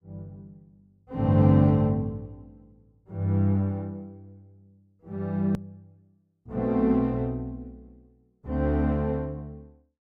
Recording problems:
edit click; at 5.5 s

